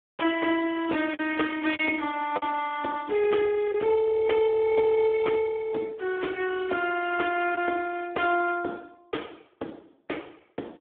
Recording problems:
telephone audio; 260 Hz to 3.4 kHz, Speex
lost packets; 1.8% of the sound replaced, filled with the last packet

